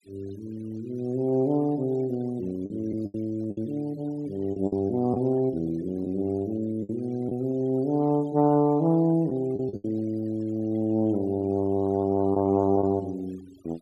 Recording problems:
noise reduction artefacts; signal-to-artefact ratio 27 dB
packet loss; 4% of the sound replaced, filled with the last packet

